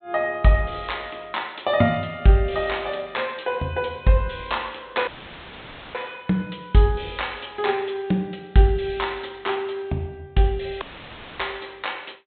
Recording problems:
treble missing; nothing above 4 kHz
audio cutting out; at 5 s for 1 s and at 11 s for 0.5 s; filled with static

